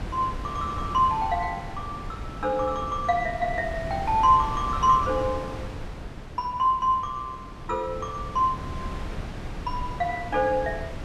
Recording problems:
wind noise; below 400 Hz, SNR 11 dB

